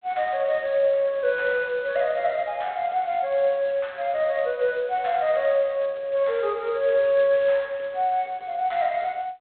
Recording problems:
telephone audio; 280 Hz to 4 kHz, G.726

